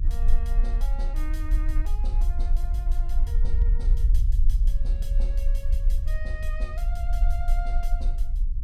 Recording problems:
low-frequency rumble; below 44 Hz, SNR -15 dB

